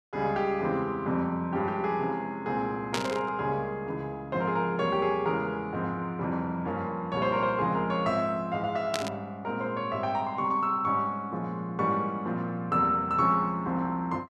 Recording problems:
static burst; at 3 s and at 9 s; peak +2 dB vs average level

